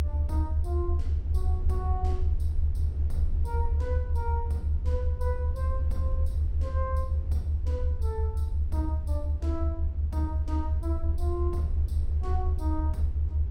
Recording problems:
rumble; below 78 Hz, strongest tone 72 Hz, SNR -10 dB

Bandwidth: 16.5 kHz